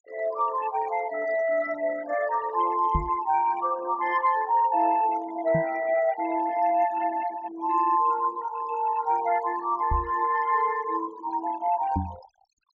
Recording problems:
treble cut off; nothing above 7.3 kHz
denoising artefacts; signal-to-artefact ratio 17 dB
knock on the microphone; 4 times, first at 3 s; peak +1 dB vs average level

